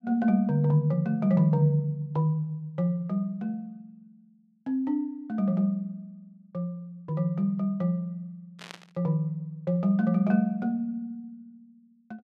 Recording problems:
static burst; at 8.5 s; peak -10 dB vs average level

